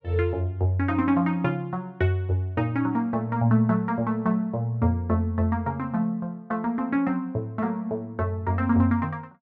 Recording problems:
none

